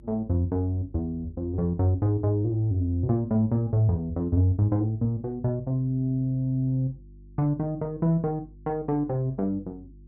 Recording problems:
hum; 50 Hz, harmonics up to 350 Hz, SNR 23 dB

